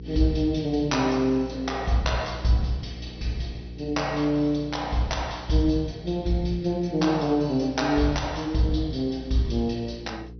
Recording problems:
low-pass filter; nothing above 6 kHz
hum; 60 Hz, harmonics up to 480 Hz, SNR 15 dB

